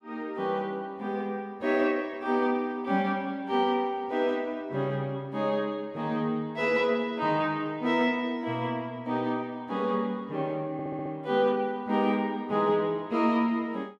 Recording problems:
audio stuttering; at 11 s

